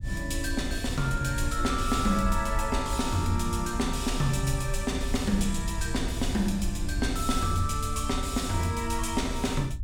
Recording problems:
rumble; below 76 Hz, SNR 6 dB

